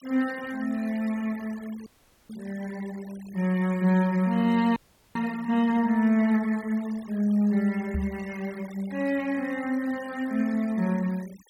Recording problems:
noise reduction artefacts; signal-to-artefact ratio 22 dB
audio freezing; at 2 s and at 5 s
knock on the microphone; at 8 s; peak 0 dB vs average level

